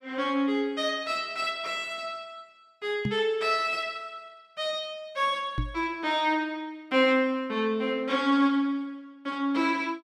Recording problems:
knock on the microphone; at 3 s and at 5.5 s; peak +2 dB vs average level

